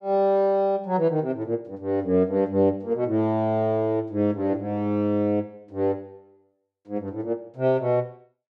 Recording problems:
none

